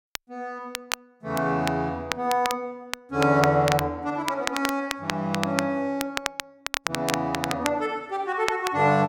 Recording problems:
crackle; vinyl, SNR 7 dB

